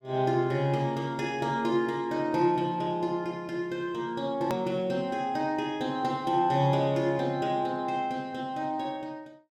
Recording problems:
click at an edit; at 4.5 s

